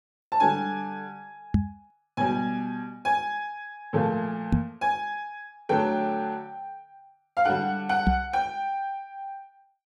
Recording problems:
microphone bump; at 1.5 s, at 4.5 s and at 8 s; peak +9 dB vs average level

